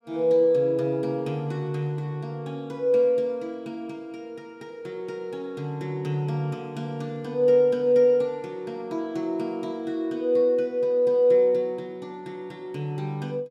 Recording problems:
none

